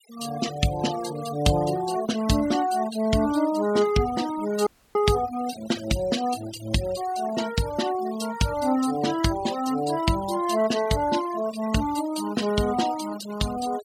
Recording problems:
denoising artefacts; signal-to-artefact ratio 14 dB
audio cutting out; at 4.5 s

